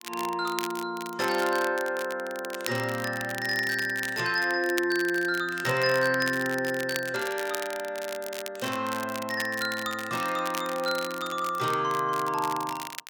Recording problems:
crackle; vinyl, SNR 11 dB

